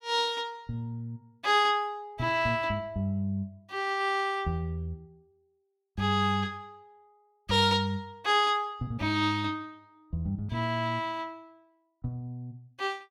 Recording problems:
none

